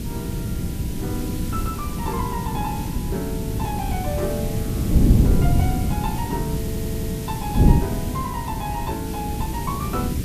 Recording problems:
hum; 60 Hz, harmonics up to 360 Hz, SNR 8 dB
hiss; SNR 7 dB
wind on the microphone; below 200 Hz, SNR -6 dB
audio stuttering; at 6.5 s

